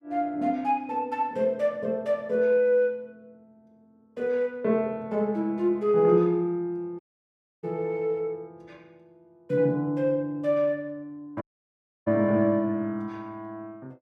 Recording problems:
audio cutting out; at 7 s for 0.5 s and at 11 s for 0.5 s

